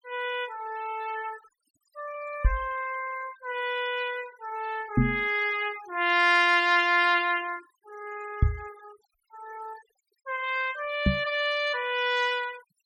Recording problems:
noise reduction artefacts; signal-to-artefact ratio 20 dB
microphone thump; 4 times, first at 2.5 s; peak +8 dB vs average level

